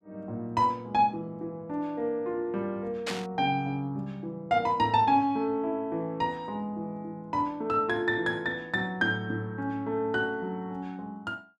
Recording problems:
burst of static; at 3 s; peak 0 dB vs average level

